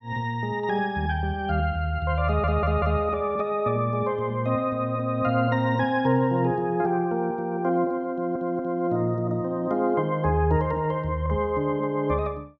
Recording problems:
stutter; at 2.5 s and at 8 s

